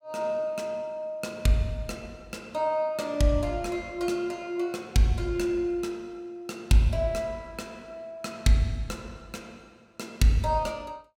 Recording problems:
none

